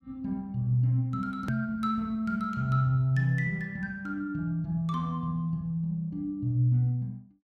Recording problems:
hard cut with a click; at 1.5 s

